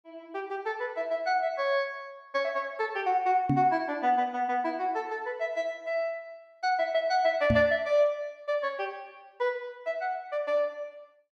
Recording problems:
microphone bump; at 3.5 s and at 7.5 s; peak +5 dB vs average level

